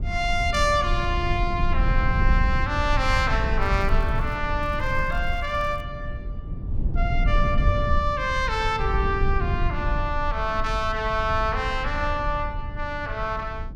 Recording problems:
rumble; below 82 Hz, SNR 3 dB
crackling; at 3.5 s and from 4.5 to 6 s; loose cable, SNR 29 dB

